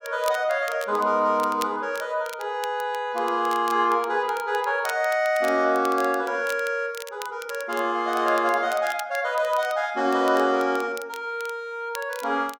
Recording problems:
crackle; vinyl, SNR 18 dB

